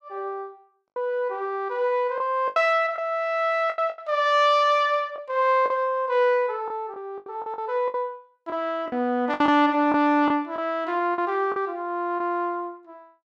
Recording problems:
packet loss; 8% of the sound replaced, filled with the last packet

